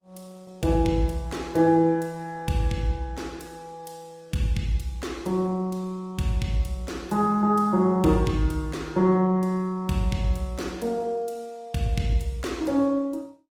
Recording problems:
lossy compression; Opus, log-spectral distance 3 dB, nothing above 19.5 kHz

